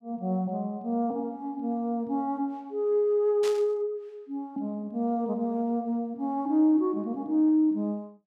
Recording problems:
static burst; at 3.5 s; peak -6 dB vs average level

